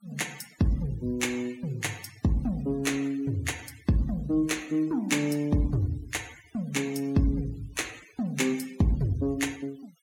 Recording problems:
noise reduction artefacts; signal-to-artefact ratio 21 dB

